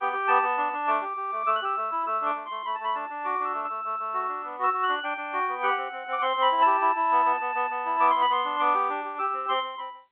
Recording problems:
phone line; 300 Hz to 3.5 kHz, G.711

